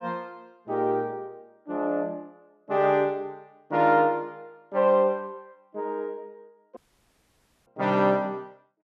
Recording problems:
dropout; at 7 s for 1 s

